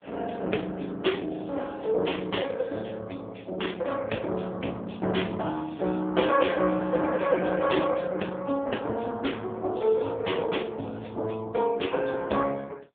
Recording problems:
telephone audio; 220 Hz to 3.5 kHz, AMR-NB

